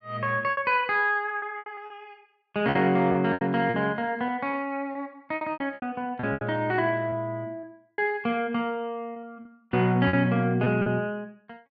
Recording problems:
packet loss; 11% of the sound replaced, filled with repeated pitch periods

